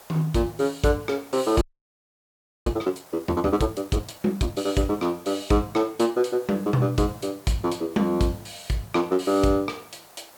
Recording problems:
background hiss; SNR 23 dB
frozen audio; at 1.5 s for 1 s

